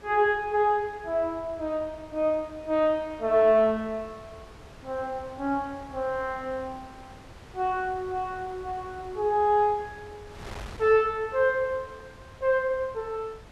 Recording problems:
wind noise; below 1.2 kHz, SNR 20 dB

